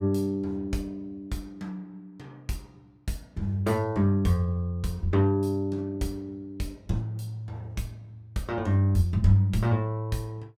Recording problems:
none

